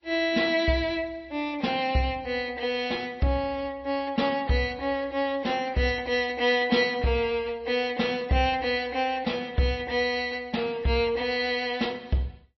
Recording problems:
lossy compression; MP3, log-spectral distance 2 dB, nothing above 5.7 kHz

